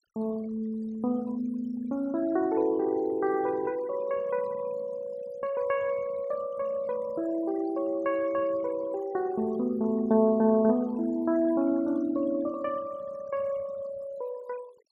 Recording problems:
denoising artefacts; signal-to-artefact ratio 23 dB

